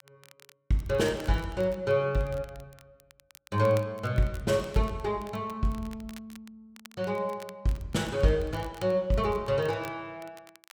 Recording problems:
crackle; vinyl, SNR 24 dB

